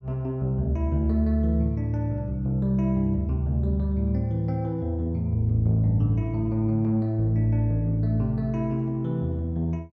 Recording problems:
none

